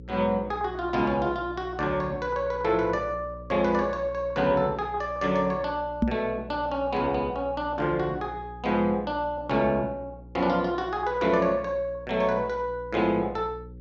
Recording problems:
treble missing; nothing above 8 kHz
electrical hum; 60 Hz, harmonics up to 540 Hz, SNR 17 dB
microphone thump; at 6 s; peak +7 dB vs average level

